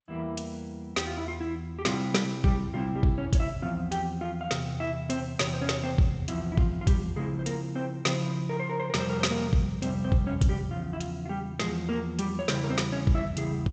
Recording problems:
codec artefacts; G.722, log-spectral distance 2 dB, nothing above 7.8 kHz

